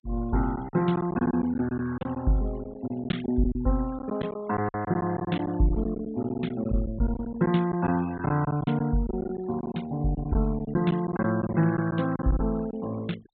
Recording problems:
treble missing; nothing above 4 kHz
noise reduction artefacts; signal-to-artefact ratio 21 dB
lost packets; 10% of the sound replaced, filled with silence

